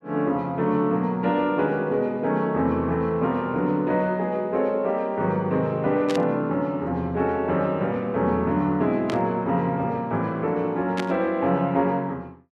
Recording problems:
burst of static; at 6 s, at 9 s and at 11 s; peak -3 dB vs average level

